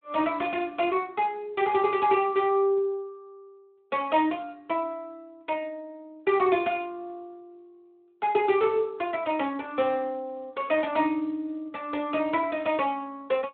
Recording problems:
telephone audio; 240 Hz to 3.7 kHz, Speex

